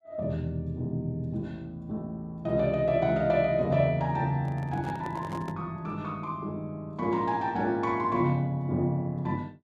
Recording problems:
handling noise; from 4.5 to 5.5 s; peak -8 dB vs average level

